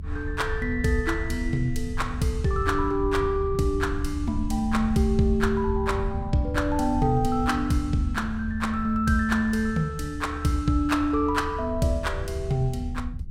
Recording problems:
rumble; below 88 Hz, SNR 7 dB

